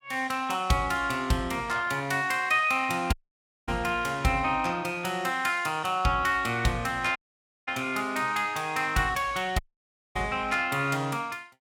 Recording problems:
dropout; at 3 s for 0.5 s, at 7 s for 0.5 s and at 9.5 s for 0.5 s

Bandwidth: 17 kHz